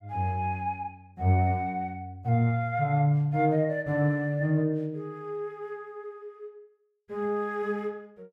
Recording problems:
none

